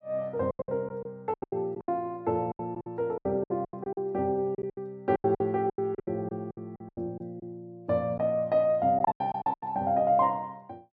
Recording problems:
lost packets; 16% of the sound replaced, filled with silence

